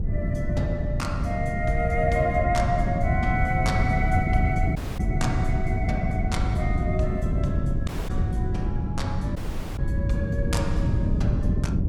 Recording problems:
wind on the microphone; below 170 Hz, SNR -3 dB
dropout; at 5 s, at 8 s and at 9.5 s

